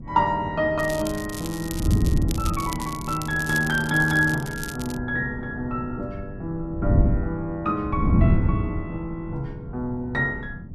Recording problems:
wind noise; below 180 Hz, SNR 2 dB
crackle; from 1 to 5 s; loose cable, SNR 11 dB

